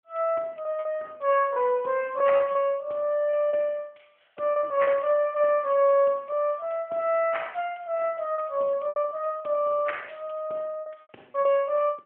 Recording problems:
telephone audio; 340 Hz to 3.3 kHz, AMR-NB
lost packets; 8% of the sound replaced, filled with repeated pitch periods

